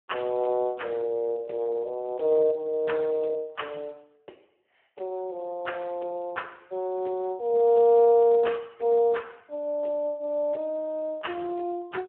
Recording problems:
phone line; 300 Hz to 3.1 kHz, Speex

